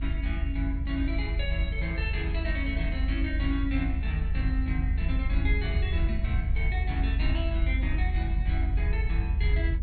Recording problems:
treble cut off; nothing above 4.4 kHz
rumble; below 74 Hz, strongest tone 48 Hz, SNR -5 dB

